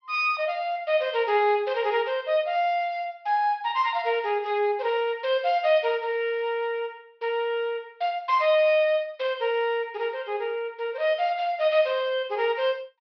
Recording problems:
treble cut off; nothing above 5.5 kHz

